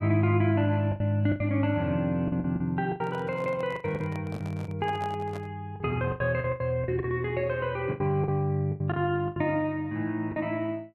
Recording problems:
packet loss; 11% of the sound replaced, filled with the last packet
microphone handling noise; from 3 to 5.5 s; peak -9 dB vs average level

